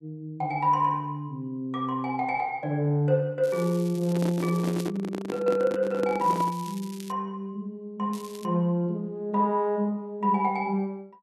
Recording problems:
crackle; from 3.5 to 5 s, at 6 s and at 8 s; loose cable, SNR 19 dB
microphone handling noise; from 4 to 6.5 s; peak 0 dB vs average level

